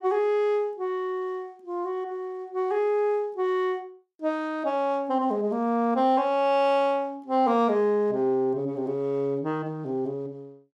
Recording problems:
none

